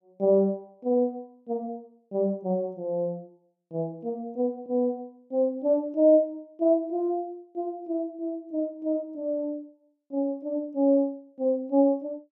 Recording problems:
none

